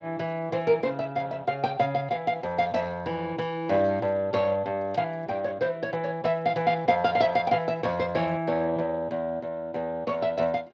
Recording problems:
lossy codec; Speex, log-spectral distance 2 dB

